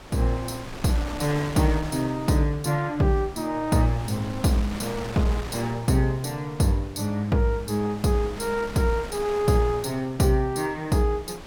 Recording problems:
wind on the microphone; below 1.9 kHz, SNR 14 dB

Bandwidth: 17 kHz